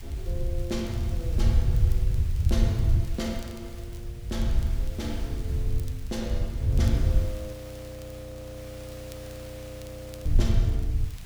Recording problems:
hiss; slope 0 dB per octave, SNR 12 dB
wind on the microphone; below 96 Hz, SNR -9 dB
crackling; vinyl, SNR 18 dB
audio freezing; at 7.5 s for 2.5 s

